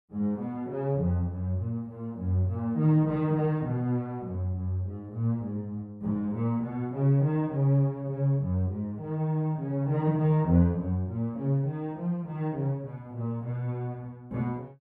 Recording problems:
none

